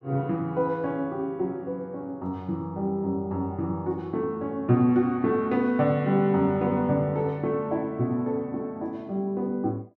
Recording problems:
none

